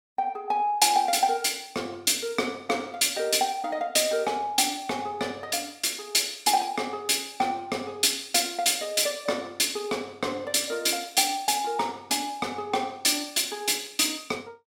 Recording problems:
none

